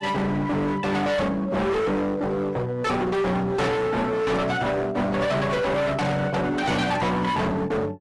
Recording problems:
codec artefacts; AAC, log-spectral distance 2 dB, nothing above 11.3 kHz
distortion; hard clipping, signal-to-distortion ratio 6 dB

